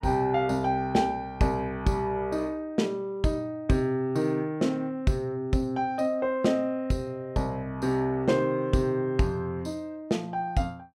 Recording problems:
none

